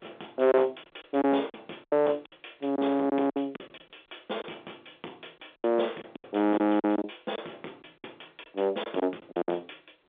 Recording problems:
phone line; 800 Hz to 3.6 kHz, G.711
distortion; soft clipping, signal-to-distortion ratio 9 dB
lost packets; 12% of the sound replaced, filled with silence

